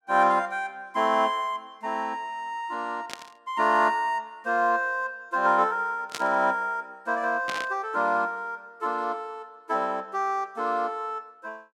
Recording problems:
burst of static; at 3 s, at 6 s and at 7.5 s; peak -2 dB vs average level

